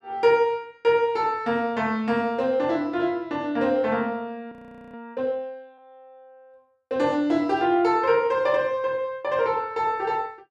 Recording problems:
audio freezing; at 4.5 s

